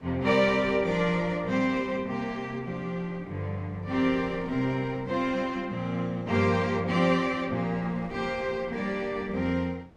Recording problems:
wind noise; below 550 Hz, SNR 20 dB

